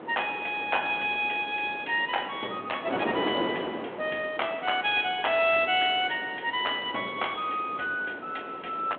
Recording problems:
telephone audio; 260 Hz to 3.5 kHz, G.726
wind noise; below 900 Hz, SNR 10 dB

